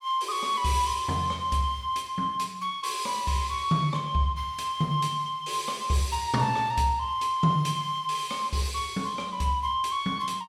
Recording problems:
none

